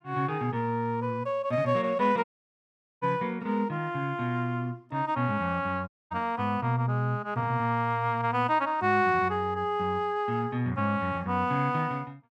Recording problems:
audio cutting out; at 2 s for 1 s and at 6 s

